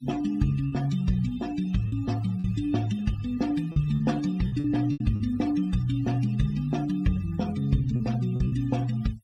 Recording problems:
denoising artefacts; signal-to-artefact ratio 19 dB
lost packets; 6% of the sound replaced, filled with repeated pitch periods

